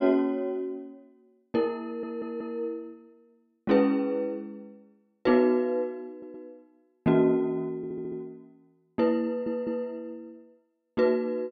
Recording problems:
stutter; 4 times, first at 2 s

